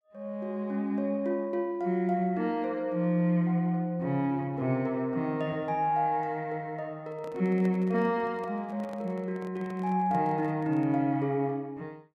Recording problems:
handling noise; from 7 to 11 s; peak -11 dB vs average level

